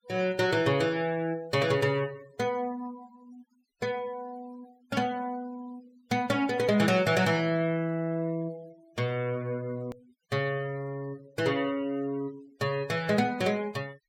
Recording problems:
denoising artefacts; signal-to-artefact ratio 24 dB
edit click; at 10 s

